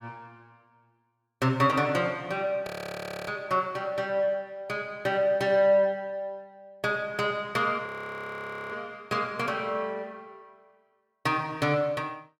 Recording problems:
audio freezing; at 2.5 s for 0.5 s and at 8 s for 1 s

